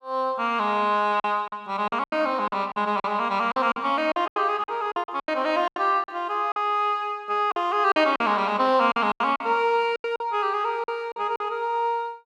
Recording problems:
lost packets; 12% of the sound replaced, filled with silence

